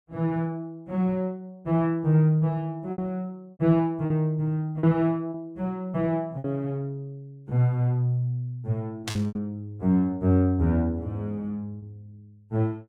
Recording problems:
lost packets; 4% of the sound replaced, filled with repeated pitch periods
burst of static; at 9 s; peak -2 dB vs average level

